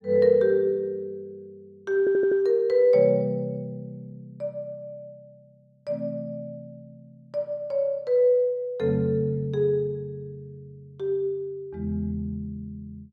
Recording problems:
stutter; at 2 s

